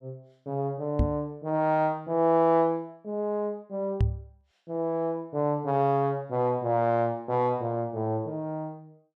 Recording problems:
knock on the microphone; at 1 s and at 4 s; peak +6 dB vs average level

